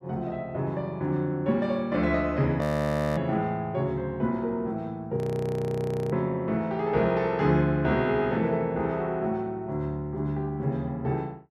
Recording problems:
frozen audio; at 2.5 s for 0.5 s and at 5 s for 1 s

